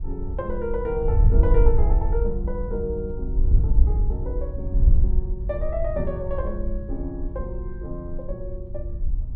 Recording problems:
wind on the microphone; below 62 Hz, SNR -5 dB

